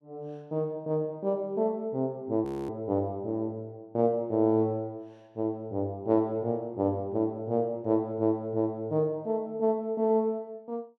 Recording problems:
audio freezing; at 2.5 s

